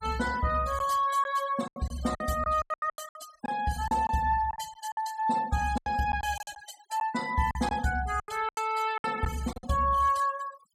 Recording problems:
denoising artefacts; signal-to-artefact ratio 16 dB
packet loss; 12% of the sound replaced, filled with silence

